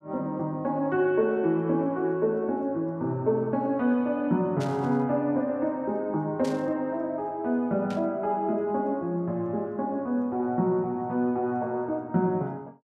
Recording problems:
static burst; at 4.5 s, at 6.5 s and at 8 s; peak -10 dB vs average level

